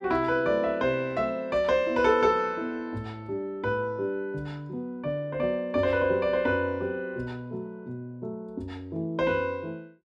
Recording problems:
none

